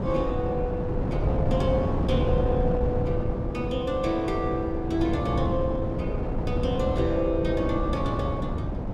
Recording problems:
wind on the microphone; below 280 Hz, SNR 0 dB

